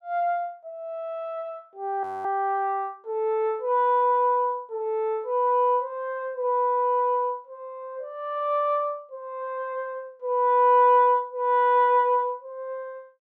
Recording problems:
frozen audio; at 2 s

